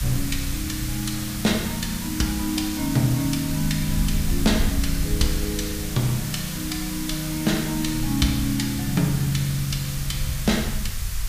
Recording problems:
hiss; slope +2 dB per octave, SNR 7 dB
low-frequency rumble; below 68 Hz, SNR 9 dB

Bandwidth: 15 kHz